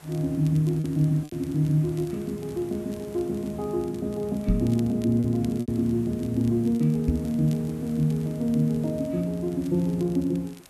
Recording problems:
hiss; slope -4 dB per octave, SNR 24 dB
crackle; vinyl, SNR 27 dB
packet loss; 3% of the sound replaced, filled with repeated pitch periods
microphone bump; at 4.5 s and at 7 s; peak +6 dB vs average level

